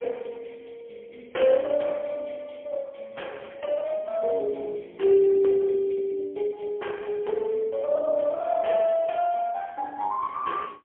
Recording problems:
telephone audio; 300 Hz to 3.4 kHz, AMR-NB, then MP3

